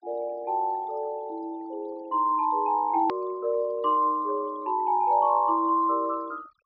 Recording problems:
treble missing; nothing above 5.5 kHz
denoising artefacts; signal-to-artefact ratio 26 dB
edit click; at 3 s

